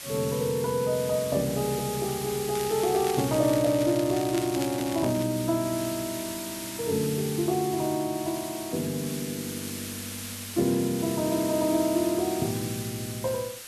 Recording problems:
background hiss; slope +1 dB per octave, SNR 9 dB
crackling; from 2.5 to 5 s; loose cable, SNR 12 dB

